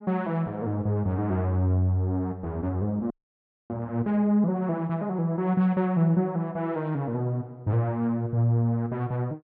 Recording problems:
audio freezing; at 3 s for 0.5 s

